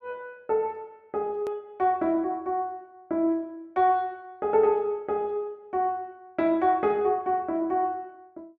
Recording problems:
hard cut with a click; at 1.5 s

